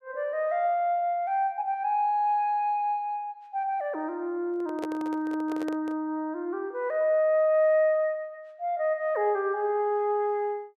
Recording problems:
handling noise; from 4.5 to 6 s; peak -5 dB vs average level

